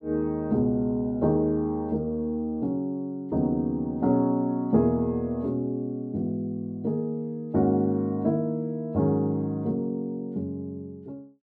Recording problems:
none

